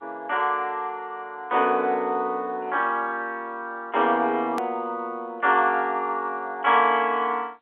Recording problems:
telephone audio; 280 Hz to 3.5 kHz, G.711
edit click; at 4.5 s

